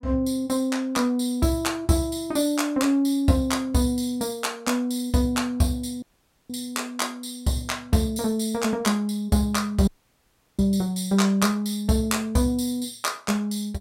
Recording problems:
dropout; at 6 s and at 10 s for 0.5 s

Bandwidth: 16 kHz